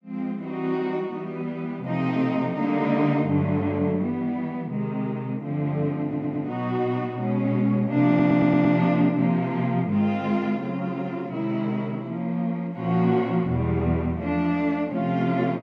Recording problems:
stutter; at 6 s and at 8 s

